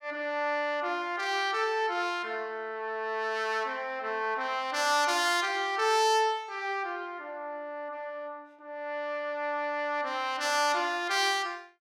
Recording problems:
none

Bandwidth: 17 kHz